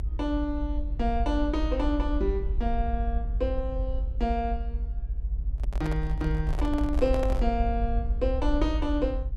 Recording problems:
rumble; below 60 Hz, strongest tone 46 Hz, SNR 0 dB
handling noise; from 5.5 to 7.5 s; peak -3 dB vs average level

